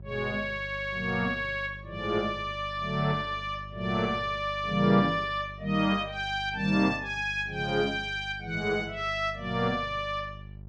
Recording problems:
hum; 50 Hz, harmonics up to 400 Hz, SNR 16 dB

